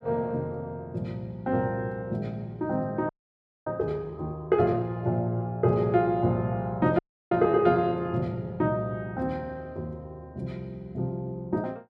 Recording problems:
audio freezing; at 3 s for 0.5 s and at 7 s

